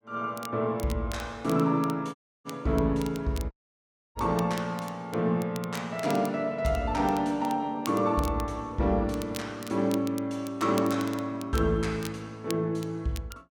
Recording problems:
crackling; vinyl, SNR 17 dB
audio cutting out; at 2 s and at 3.5 s for 0.5 s

